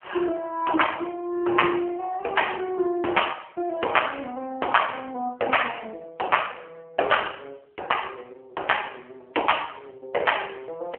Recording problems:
phone line; 320 Hz to 3.2 kHz, AMR-NB

